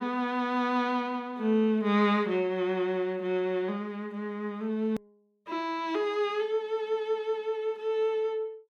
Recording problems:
edit click; at 5 s

